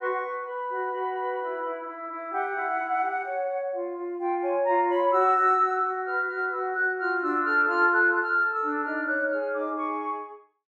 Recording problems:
none

